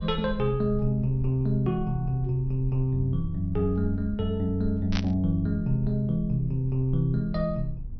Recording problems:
low-pass filter; nothing above 6 kHz
rumble; below 56 Hz, SNR 13 dB
burst of static; at 5 s; peak -1 dB vs average level

